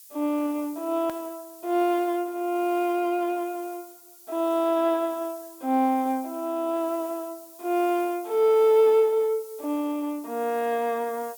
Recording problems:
background hiss; SNR 21 dB
hard cut with a click; at 1 s

